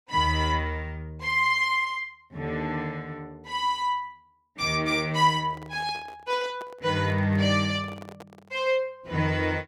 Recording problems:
microphone handling noise; from 5.5 to 8.5 s; peak -12 dB vs average level

